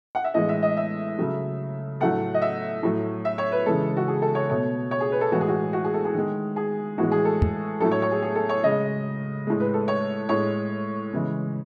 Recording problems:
knock on the microphone; at 7.5 s; peak +8 dB vs average level

